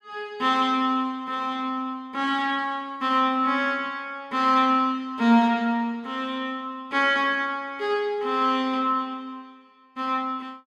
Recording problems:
none

